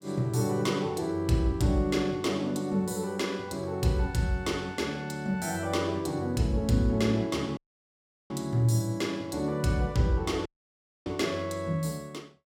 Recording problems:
dropout; at 7.5 s for 0.5 s and at 10 s for 0.5 s

